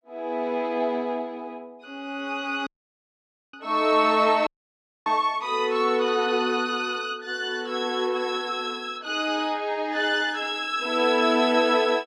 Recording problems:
dropout; at 2.5 s for 1 s and at 4.5 s for 0.5 s

